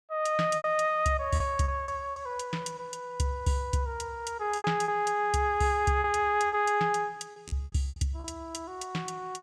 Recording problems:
lost packets; 8% of the sound replaced, filled with repeated pitch periods

